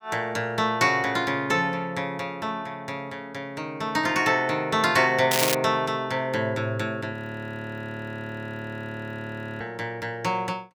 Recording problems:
crackle; at 5.5 s; loose cable, SNR 0 dB
audio freezing; at 7 s for 2.5 s

